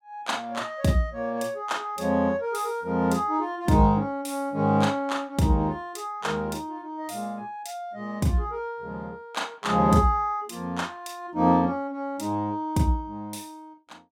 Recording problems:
none

